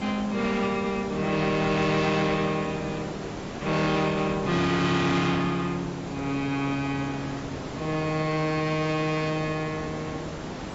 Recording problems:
lossy codec; AAC, log-spectral distance 6 dB, nothing above 7.6 kHz
distorted audio; hard clipping, signal-to-distortion ratio 7 dB
hiss; slope -6 dB per octave, SNR 10 dB

